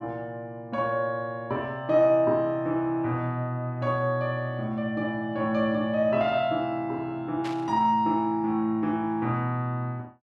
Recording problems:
burst of static; at 7.5 s; peak -8 dB vs average level

